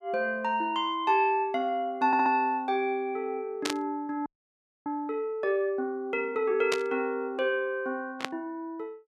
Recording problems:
stutter; at 2 s
burst of static; at 3.5 s, at 6.5 s and at 8 s; peak +3 dB vs average level
audio freezing; at 4.5 s for 0.5 s

